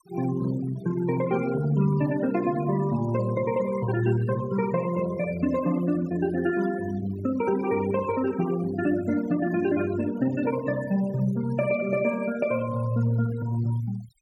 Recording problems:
noise reduction artefacts; signal-to-artefact ratio 16 dB

